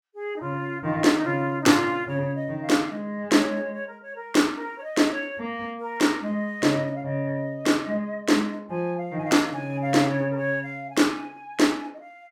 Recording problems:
none

